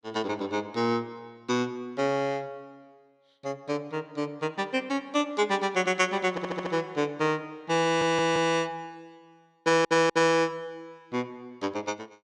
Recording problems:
stutter; at 6.5 s, at 8 s and at 9.5 s

